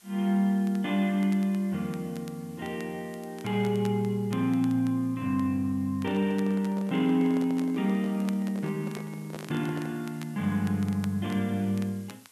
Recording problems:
hiss; slope 0 dB per octave, SNR 27 dB
crackling; vinyl, SNR 24 dB
handling noise; from 6 to 10 s; peak -8 dB vs average level

